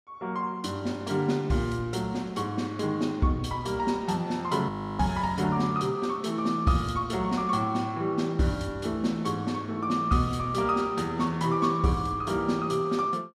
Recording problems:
audio freezing; at 4.5 s

